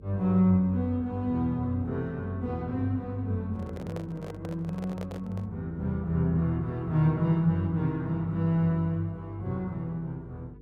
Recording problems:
hum; 50 Hz, harmonics up to 500 Hz, SNR 21 dB
microphone handling noise; from 3.5 to 5.5 s; peak -7 dB vs average level

